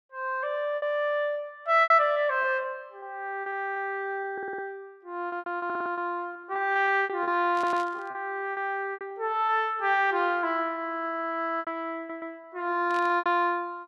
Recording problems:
lost packets; 10% of the sound replaced, filled with repeated pitch periods
audio stuttering; 4 times, first at 4.5 s
burst of static; at 7.5 s and at 13 s; peak -12 dB vs average level

